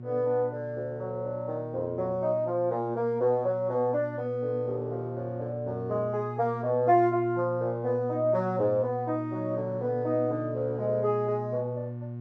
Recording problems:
hum; 60 Hz, harmonics up to 480 Hz, SNR 10 dB

